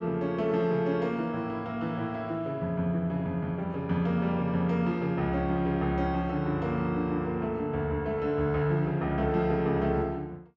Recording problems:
none

